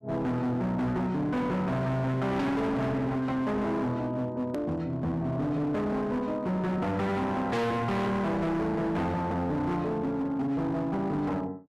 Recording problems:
distortion; hard clipping, signal-to-distortion ratio 7 dB
hard cut with a click; at 4.5 s

